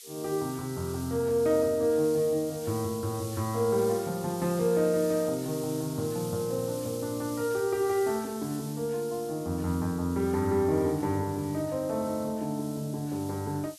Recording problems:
background hiss; slope +8 dB per octave, SNR 15 dB

